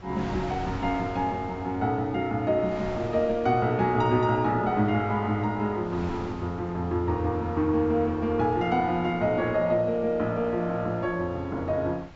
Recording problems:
low-pass filter; nothing above 8 kHz
wind noise; below 1.1 kHz, SNR 18 dB

